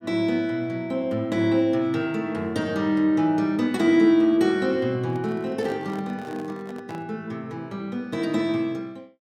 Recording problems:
handling noise; from 5 to 7 s; peak -12 dB vs average level

